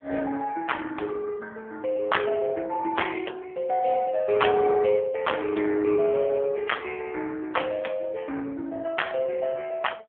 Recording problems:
telephone audio; 280 Hz to 3.3 kHz, AMR-NB

